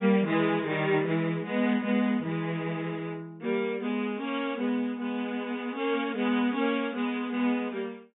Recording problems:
treble missing; nothing above 3.7 kHz

